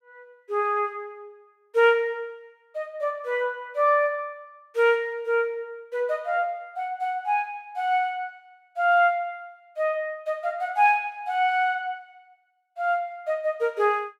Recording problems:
none

